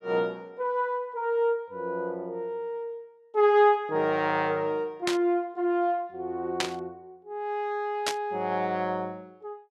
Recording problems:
static burst; at 5 s, at 6.5 s and at 8 s; peak +4 dB vs average level

